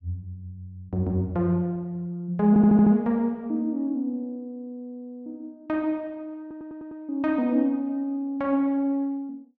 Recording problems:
stutter; at 2.5 s and at 6.5 s

